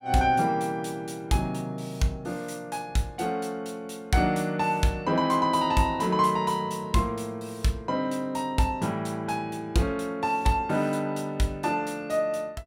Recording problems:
none

